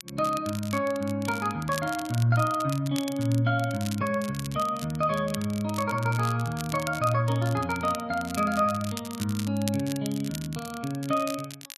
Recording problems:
crackling; vinyl, SNR 13 dB

